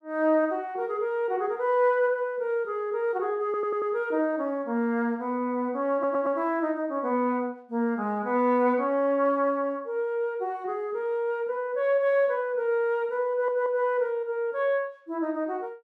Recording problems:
stutter; at 3.5 s, at 6 s and at 13 s

